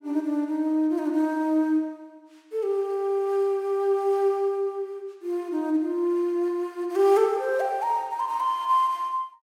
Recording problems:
none

